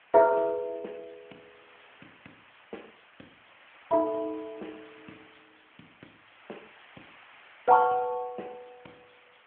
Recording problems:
telephone audio; 240 Hz to 3.1 kHz, AMR-NB
background hiss; SNR 27 dB

